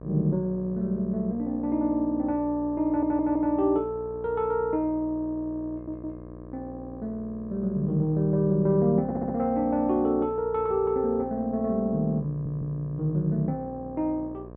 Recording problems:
hum; 60 Hz, harmonics up to 1.3 kHz, SNR 16 dB
stutter; 4 times, first at 3 s

